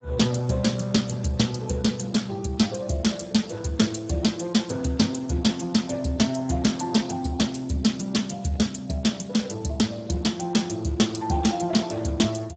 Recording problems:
lossy compression; Speex, log-spectral distance 5 dB, nothing above 7.6 kHz

